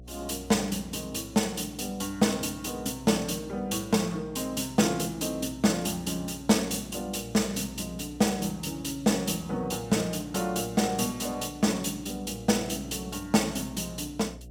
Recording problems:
hum; 60 Hz, harmonics up to 720 Hz, SNR 20 dB

